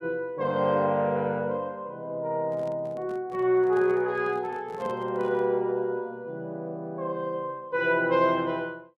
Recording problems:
microphone handling noise; from 2.5 to 5.5 s; peak -10 dB vs average level

